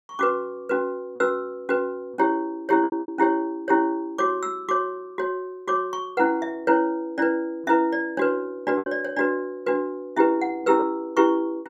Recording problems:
lost packets; 3% of the sound replaced, filled with repeated pitch periods

